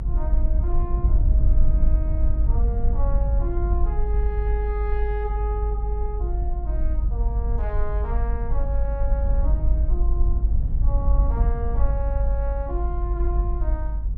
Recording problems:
low-frequency rumble; below 52 Hz, SNR -10 dB

